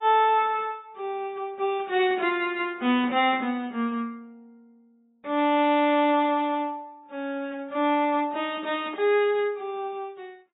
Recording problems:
lossy codec; AAC, log-spectral distance 2 dB, nothing above 3.7 kHz

